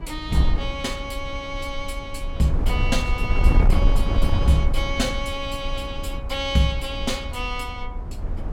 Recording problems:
wind noise; below 72 Hz, SNR 0 dB

